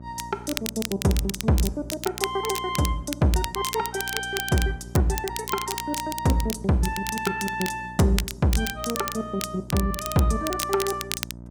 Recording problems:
hum; 60 Hz, harmonics up to 960 Hz, SNR 17 dB
crackle; vinyl, SNR 7 dB

